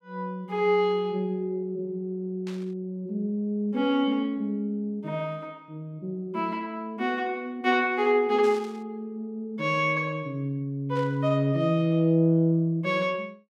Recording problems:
static burst; at 2.5 s, at 8.5 s and at 11 s; peak -13 dB vs average level

